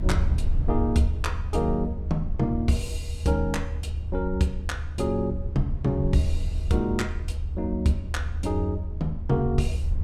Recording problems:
low-frequency rumble; below 76 Hz, SNR 3 dB

